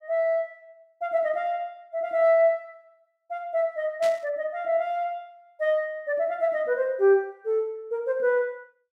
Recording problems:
static burst; at 4 s; peak -9 dB vs average level

